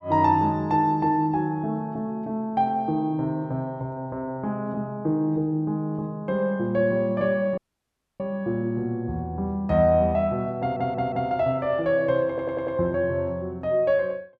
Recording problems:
dropout; at 7.5 s for 0.5 s
stutter; at 11 s and at 12 s

